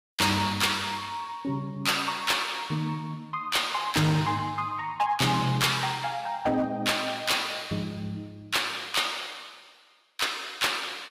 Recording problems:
codec artefacts; Vorbis, log-spectral distance 3 dB, nothing above 15.5 kHz
distortion; hard clipping, signal-to-distortion ratio 11 dB

